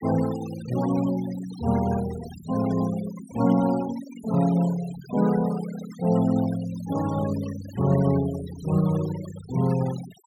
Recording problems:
noise reduction artefacts; signal-to-artefact ratio 16 dB

